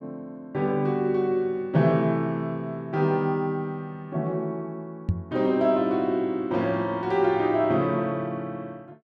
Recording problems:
microphone thump; at 5 s; peak +4 dB vs average level

